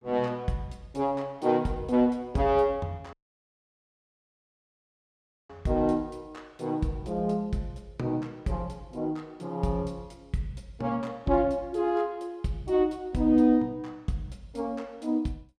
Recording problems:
dropout; at 3 s for 2.5 s

